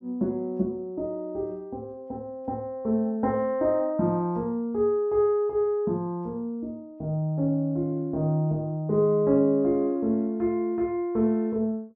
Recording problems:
none

